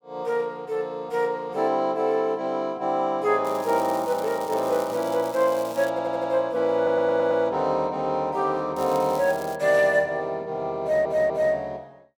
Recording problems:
crackling; from 3.5 to 6 s and at 9 s; loose cable, SNR 19 dB
audio stuttering; at 6 s, at 7 s and at 11 s

